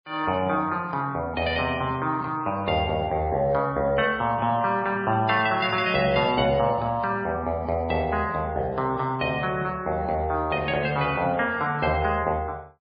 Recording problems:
lossy codec; MP3, log-spectral distance 2 dB

